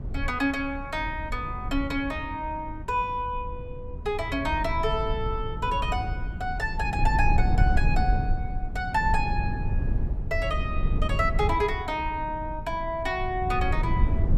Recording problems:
rumble; below 92 Hz, SNR 2 dB

